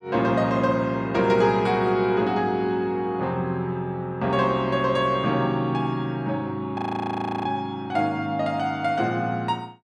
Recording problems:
frozen audio; at 7 s for 0.5 s

